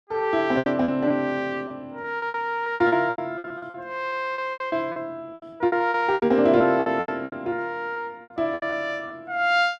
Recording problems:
packet loss; 18% of the sound replaced, filled with repeated pitch periods

